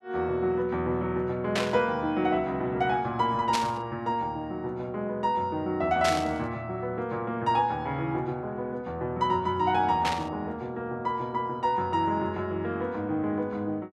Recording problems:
static burst; 4 times, first at 1.5 s; peak +3 dB vs average level

